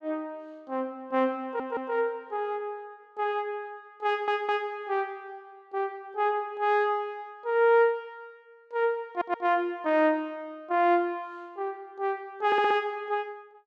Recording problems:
audio stuttering; 4 times, first at 1.5 s

